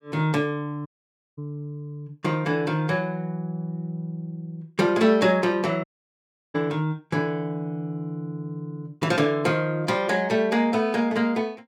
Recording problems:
dropout; at 1 s for 0.5 s and at 6 s for 0.5 s

